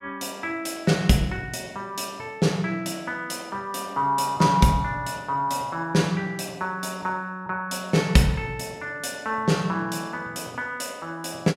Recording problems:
none

